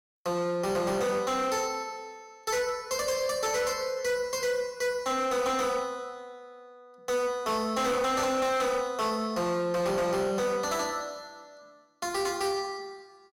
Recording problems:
distorted audio; hard clipping, signal-to-distortion ratio 10 dB

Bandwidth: 16.5 kHz